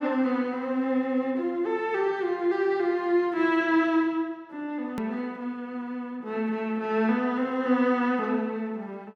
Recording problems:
click at an edit; at 5 s

